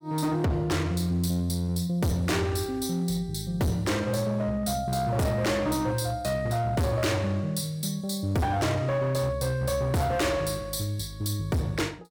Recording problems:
distortion; hard clipping, uneven, signal-to-distortion ratio 7 dB

